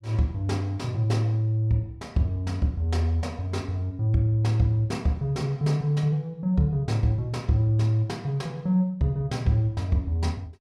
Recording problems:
none

